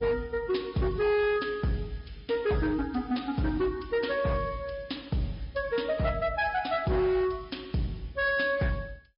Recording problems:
low-pass filter; nothing above 5.2 kHz
lossy codec; MP3, then Vorbis, log-spectral distance 3 dB
distortion; hard clipping, uneven, signal-to-distortion ratio 12 dB

